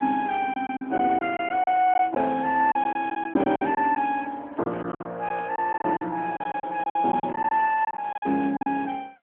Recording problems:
telephone audio; 190 Hz to 3.3 kHz, AMR-NB
lost packets; 12% of the sound replaced, filled with silence
handling noise; from 4 to 7.5 s; peak -10 dB vs average level

